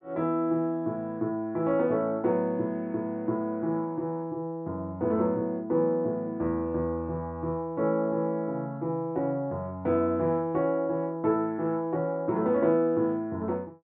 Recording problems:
treble missing; nothing above 4.7 kHz

